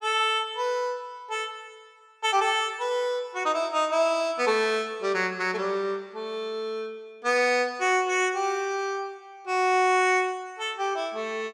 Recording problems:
none

